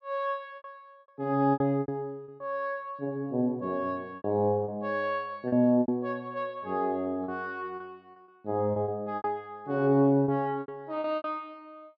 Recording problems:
lost packets; 9% of the sound replaced, filled with repeated pitch periods

